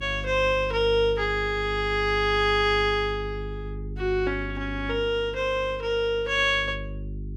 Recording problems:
mains hum; 50 Hz, harmonics up to 400 Hz, SNR 12 dB

